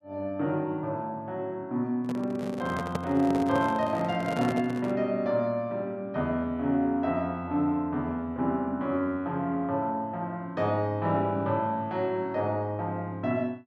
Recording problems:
handling noise; from 2 to 5 s; peak +1 dB vs average level

